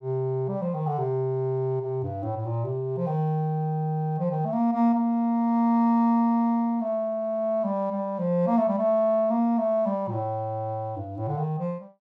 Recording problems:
none

